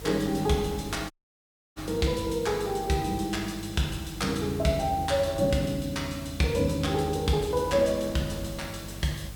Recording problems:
electrical hum; 50 Hz, harmonics up to 400 Hz, SNR 16 dB
background hiss; slope -2 dB per octave, SNR 19 dB
wind noise; below 880 Hz, SNR 23 dB
dropout; at 1 s for 0.5 s

